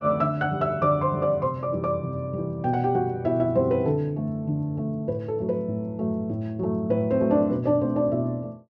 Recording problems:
none

